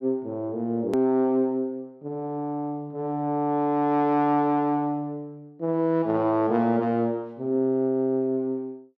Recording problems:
edit click; at 1 s

